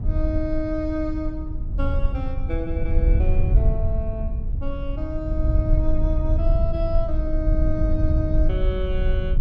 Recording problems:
rumble; below 74 Hz, SNR -5 dB

